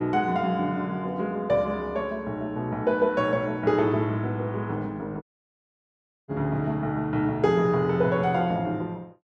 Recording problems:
dropout; at 5 s for 1 s

